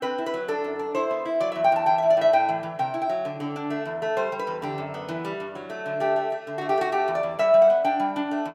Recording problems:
none

